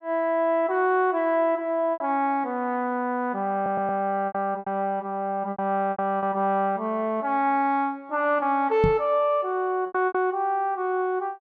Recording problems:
packet loss; 5% of the sound replaced, filled with repeated pitch periods
stutter; at 3.5 s
microphone thump; at 9 s; peak +4 dB vs average level

